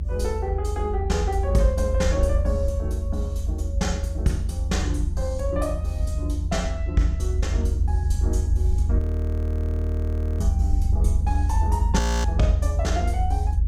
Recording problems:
low-frequency rumble; below 80 Hz, SNR -4 dB
audio freezing; at 9 s for 1.5 s and at 12 s

